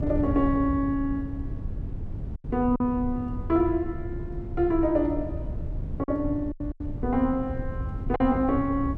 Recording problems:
wind noise; below 130 Hz, SNR 8 dB
packet loss; 4% of the sound replaced, filled with silence

